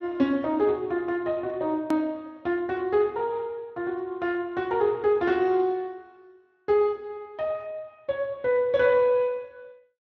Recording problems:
lossy compression; Speex, log-spectral distance 2 dB, nothing above 13.1 kHz
edit click; at 2 s

